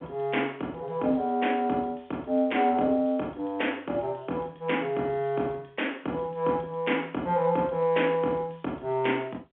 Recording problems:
phone line; 300 Hz to 3.4 kHz, G.711

